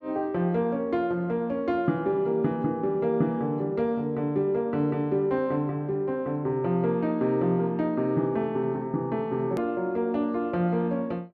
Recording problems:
edit click; at 9.5 s

